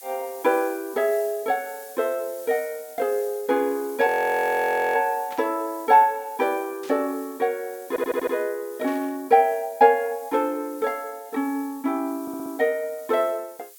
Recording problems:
hiss; slope +5 dB per octave, SNR 20 dB
audio freezing; at 4 s for 1 s
static burst; at 5.5 s, at 7 s and at 9 s; peak -14 dB vs average level
stutter; at 8 s and at 12 s

